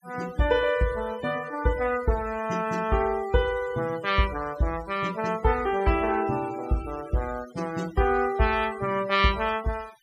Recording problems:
denoising artefacts; signal-to-artefact ratio 19 dB

